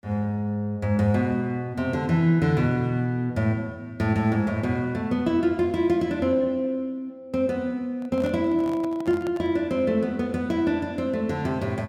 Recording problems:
microphone handling noise; from 8 to 9.5 s; peak -9 dB vs average level

